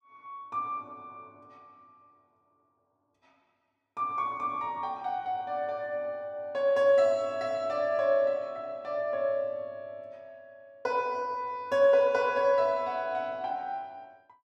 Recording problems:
none

